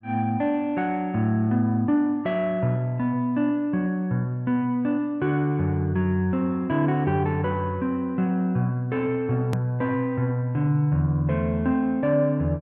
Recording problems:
edit click; at 9.5 s

